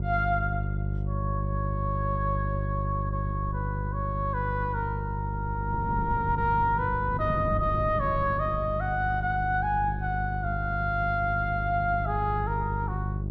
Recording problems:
hum; 50 Hz, harmonics up to 550 Hz, SNR 3 dB
wind noise; below 210 Hz, SNR 12 dB

